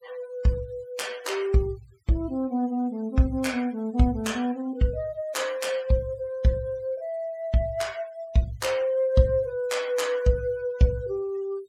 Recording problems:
noise reduction artefacts; signal-to-artefact ratio 23 dB

